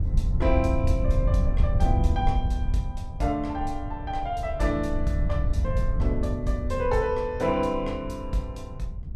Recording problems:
wind on the microphone; below 88 Hz, SNR -1 dB

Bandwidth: 14 kHz